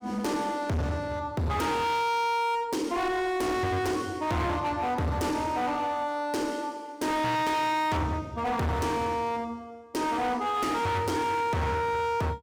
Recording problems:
distorted audio; hard clipping, signal-to-distortion ratio 6 dB

